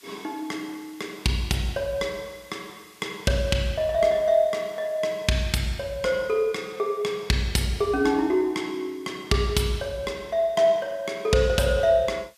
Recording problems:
background hiss; slope +3 dB per octave, SNR 28 dB

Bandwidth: 14.5 kHz